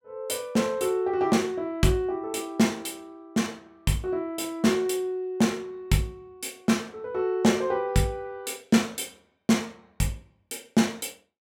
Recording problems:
none

